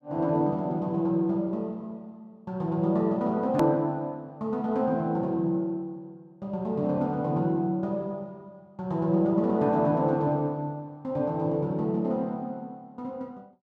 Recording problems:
edit click; at 3.5 s

